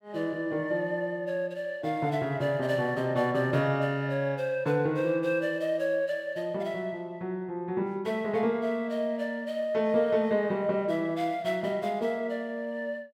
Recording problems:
none

